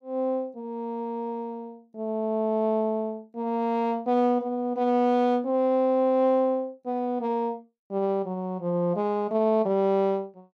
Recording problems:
none

